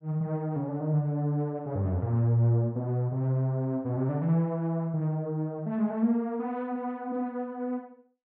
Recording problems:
none

